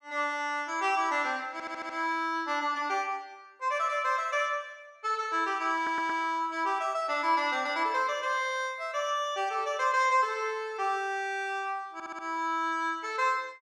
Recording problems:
audio stuttering; at 1.5 s, at 6 s and at 12 s

